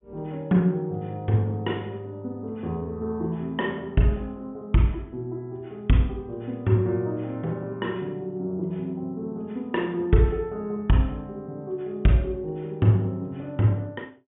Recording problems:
low-pass filter; nothing above 3.4 kHz

